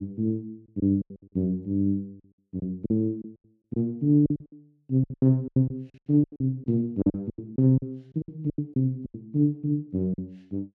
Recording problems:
packet loss; 14% of the sound replaced, filled with silence

